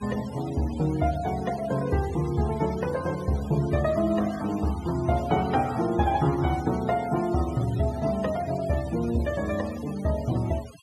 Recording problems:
noise reduction artefacts; signal-to-artefact ratio 17 dB

